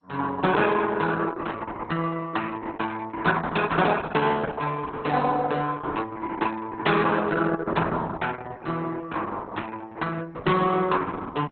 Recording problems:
lossy compression; Opus, then MP2, log-spectral distance 5 dB, nothing above 3.9 kHz

